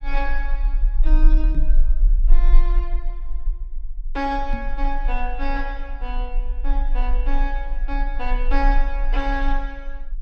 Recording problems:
low-frequency rumble; below 36 Hz, strongest tone 22 Hz, SNR -5 dB
microphone bump; at 1.5 s and at 4.5 s; peak +2 dB vs average level

